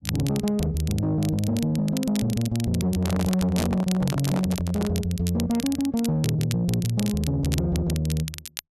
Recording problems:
distorted audio; soft clipping, signal-to-distortion ratio 11 dB
crackling; vinyl, SNR 12 dB
microphone handling noise; from 3 to 5 s; peak -1 dB vs average level

